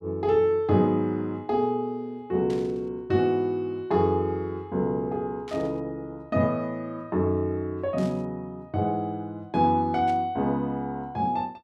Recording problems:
static burst; 4 times, first at 2.5 s; peak -14 dB vs average level

